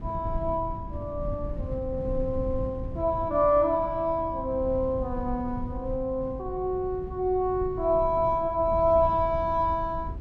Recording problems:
rumble; below 130 Hz, SNR 10 dB

